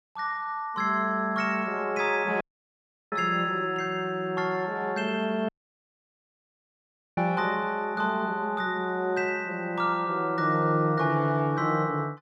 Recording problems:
audio cutting out; at 2.5 s for 0.5 s and at 5.5 s for 1.5 s

